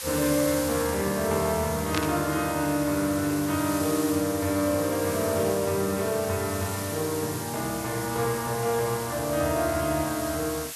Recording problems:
background hiss; slope +2 dB per octave, SNR 8 dB
static burst; at 2 s; peak +1 dB vs average level

